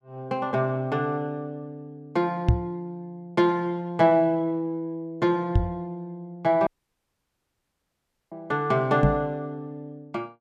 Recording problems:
microphone thump; at 2.5 s, at 5.5 s and at 9 s; peak +9 dB vs average level
audio cutting out; at 6.5 s for 1.5 s

